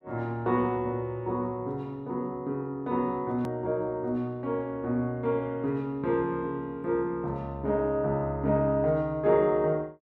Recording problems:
edit click; at 3.5 s

